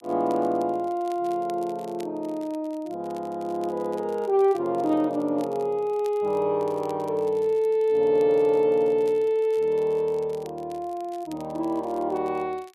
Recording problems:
crackling; vinyl, SNR 28 dB

